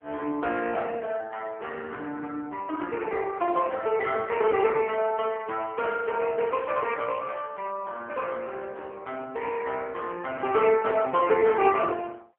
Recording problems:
telephone audio; 220 Hz to 3.1 kHz, AMR-NB

